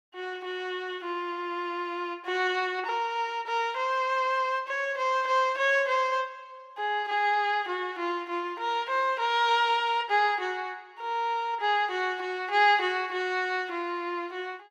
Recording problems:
none

